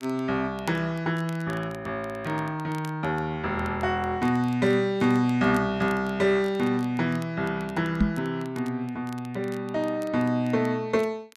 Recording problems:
crackling; vinyl, SNR 25 dB
knock on the microphone; at 8 s; peak +7 dB vs average level

